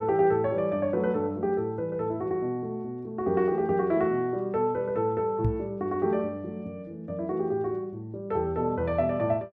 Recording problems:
microphone thump; at 5.5 s; peak +4 dB vs average level

